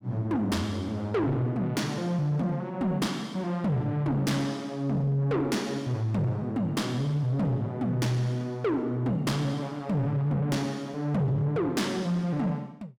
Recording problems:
distortion; soft clipping, signal-to-distortion ratio 11 dB

